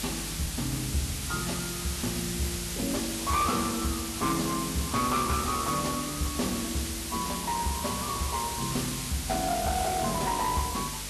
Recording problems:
codec artefacts; Vorbis, log-spectral distance 13 dB, nothing above 12.3 kHz
distorted audio; hard clipping, uneven, signal-to-distortion ratio 11 dB
hum; 50 Hz, harmonics up to 300 Hz, SNR 15 dB
hiss; slope +1 dB per octave, SNR 3 dB

